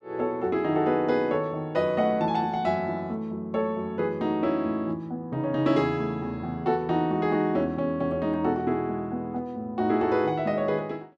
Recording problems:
none

